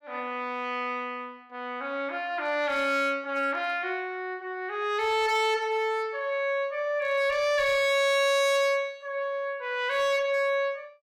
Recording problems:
distortion; hard clipping, signal-to-distortion ratio 12 dB

